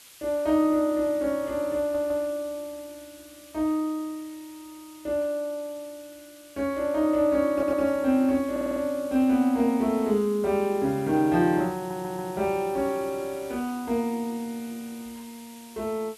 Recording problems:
background hiss; slope +2 dB per octave, SNR 22 dB
audio stuttering; 4 times, first at 2 s

